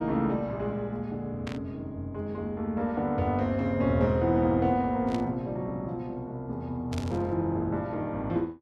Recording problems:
static burst; at 1.5 s, at 5 s and at 7 s; peak -7 dB vs average level

